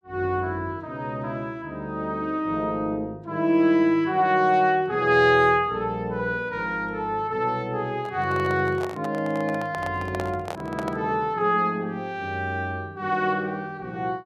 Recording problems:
microphone handling noise; from 8 to 11 s; peak -4 dB vs average level

